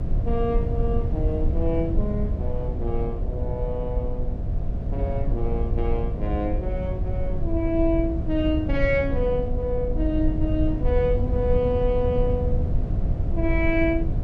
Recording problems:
electrical hum; 60 Hz, harmonics up to 720 Hz, SNR 15 dB
low-frequency rumble; below 92 Hz, SNR 0 dB

